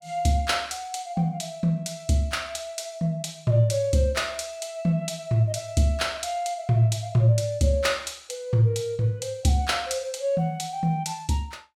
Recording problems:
none

